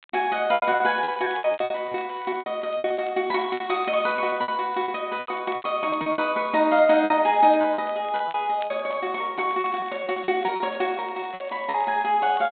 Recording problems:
treble cut off; nothing above 4 kHz
crackle; vinyl, SNR 27 dB
packet loss; 15% of the sound replaced, filled with repeated pitch periods

